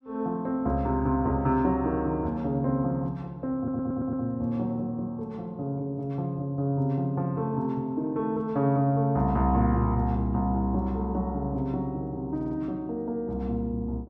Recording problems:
audio stuttering; at 3.5 s and at 12 s

